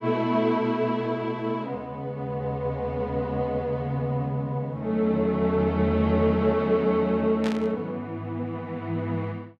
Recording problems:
burst of static; at 7.5 s; peak -5 dB vs average level

